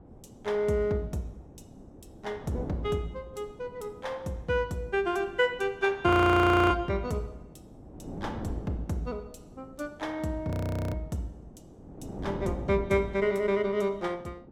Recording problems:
wind noise; below 390 Hz, SNR 16 dB
audio freezing; at 6 s for 0.5 s and at 11 s

